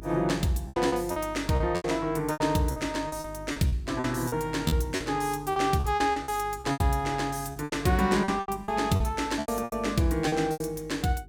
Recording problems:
hum; 50 Hz, harmonics up to 400 Hz, SNR 18 dB
packet loss; 15% of the sound replaced, filled with repeated pitch periods

